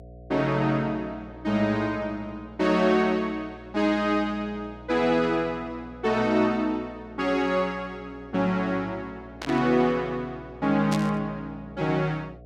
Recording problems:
hum; 60 Hz, harmonics up to 720 Hz, SNR 21 dB
static burst; at 9.5 s and at 11 s; peak -4 dB vs average level

